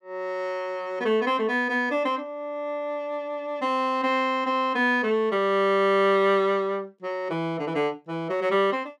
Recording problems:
none

